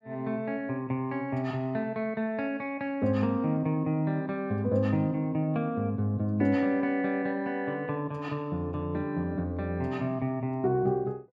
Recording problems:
none

